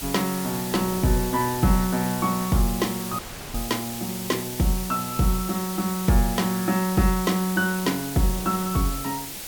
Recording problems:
background hiss; slope 0 dB per octave, SNR 8 dB
wind on the microphone; below 490 Hz, SNR 21 dB
dropout; at 3 s

